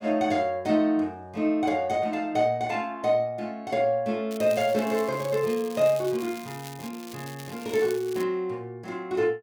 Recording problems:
crackle; from 4.5 to 8 s; loose cable, SNR 18 dB

